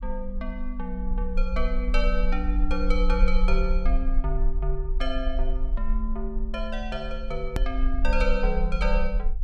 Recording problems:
low-frequency rumble; below 42 Hz, strongest tone 24 Hz, SNR -2 dB
hard cut with a click; at 7.5 s

